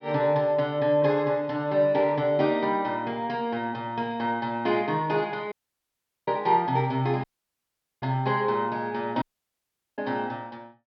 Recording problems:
treble cut off; nothing above 5.5 kHz
dropout; at 5.5 s for 1 s, at 7 s for 1 s and at 9 s for 1 s

